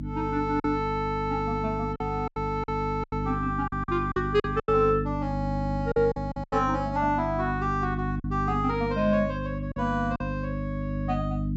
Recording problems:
treble cut off; nothing above 8 kHz
electrical hum; 50 Hz, harmonics up to 300 Hz, SNR 4 dB
lost packets; 7% of the sound replaced, filled with silence

